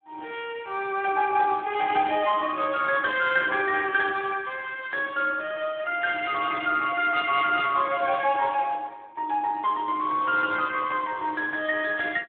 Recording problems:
phone line; 220 Hz to 3.6 kHz, Speex

